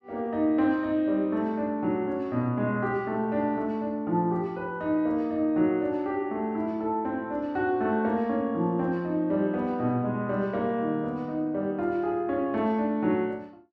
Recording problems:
none

